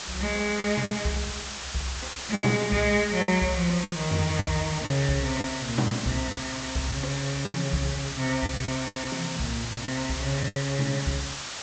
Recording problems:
low-pass filter; nothing above 8 kHz
background hiss; slope 0 dB per octave, SNR 6 dB
lost packets; 9% of the sound replaced, filled with the last packet

